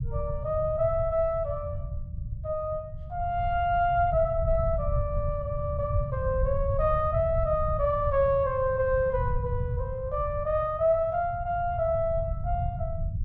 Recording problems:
low-frequency rumble; below 110 Hz, SNR 6 dB

